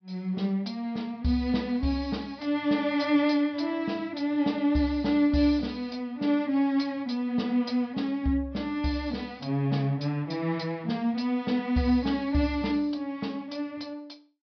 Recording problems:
low-pass filter; nothing above 5.5 kHz

